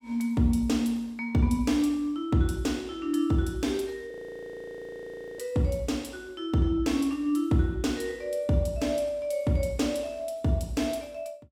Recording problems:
audio freezing; at 4 s for 1.5 s

